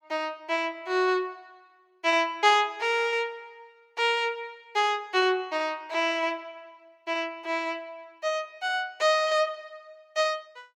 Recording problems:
none

